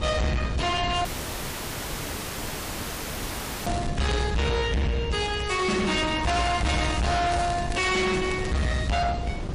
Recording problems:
codec artefacts; MP3, log-spectral distance 4 dB, nothing above 10.4 kHz
distortion; hard clipping, signal-to-distortion ratio 6 dB
wind noise; below 420 Hz, SNR 9 dB
dropout; at 1 s for 2.5 s
crackling; at 3.5 s, from 5 to 8 s and at 8 s; loose cable, SNR 16 dB

